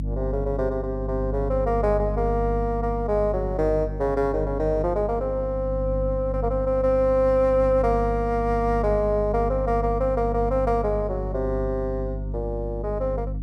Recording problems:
hum; 50 Hz, harmonics up to 300 Hz, SNR 6 dB

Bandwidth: 13.5 kHz